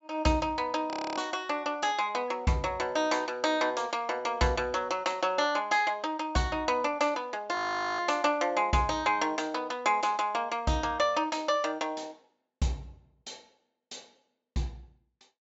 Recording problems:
treble cut off; nothing above 8 kHz
audio freezing; at 1 s and at 7.5 s

